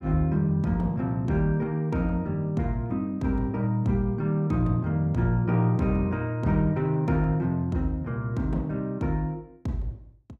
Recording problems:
none

